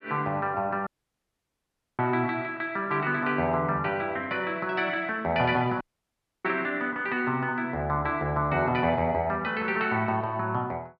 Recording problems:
audio cutting out; at 1 s for 1 s and at 6 s for 0.5 s

